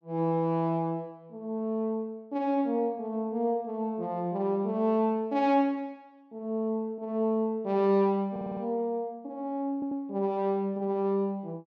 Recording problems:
stutter; at 8.5 s and at 9.5 s

